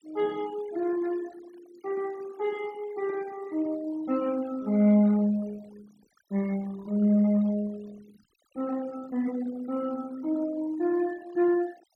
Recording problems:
noise reduction artefacts; signal-to-artefact ratio 23 dB

